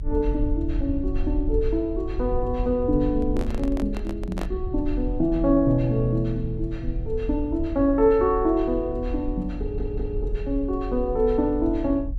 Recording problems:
low-frequency rumble; below 58 Hz, strongest tone 40 Hz, SNR 7 dB
handling noise; from 3 to 4.5 s; peak -4 dB vs average level
audio stuttering; at 9.5 s

